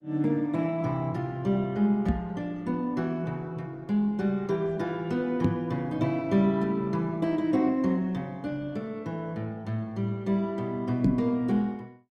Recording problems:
lossy codec; Opus, then Opus, log-spectral distance 2 dB, nothing above 17.7 kHz
knock on the microphone; at 2 s, at 5.5 s and at 11 s; peak +8 dB vs average level

